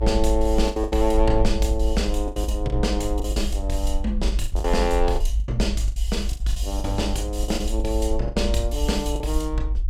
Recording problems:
rumble; below 54 Hz, SNR 1 dB
packet loss; 12% of the sound replaced, filled with the last packet

